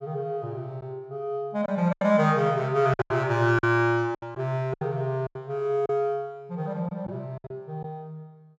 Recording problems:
lost packets; 8% of the sound replaced, filled with silence

